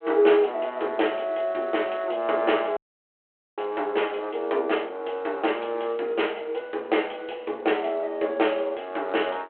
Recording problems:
phone line; 320 Hz to 3.3 kHz, G.726
dropout; at 3 s for 1 s

